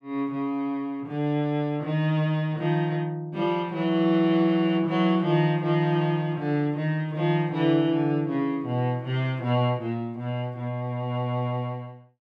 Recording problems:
none

